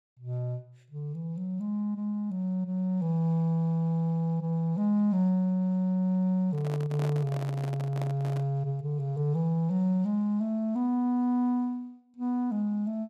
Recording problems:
handling noise; from 6.5 to 8.5 s; peak -7 dB vs average level

